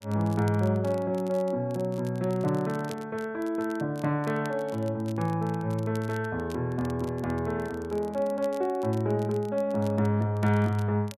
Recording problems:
crackling; vinyl, SNR 24 dB

